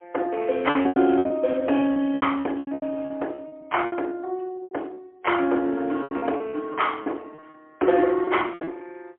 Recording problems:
telephone audio; 240 Hz to 3.3 kHz, AMR-NB, then MP3
packet loss; 16% of the sound replaced, filled with repeated pitch periods

